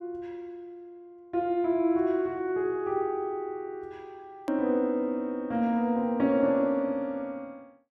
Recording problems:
edit click; at 4.5 s

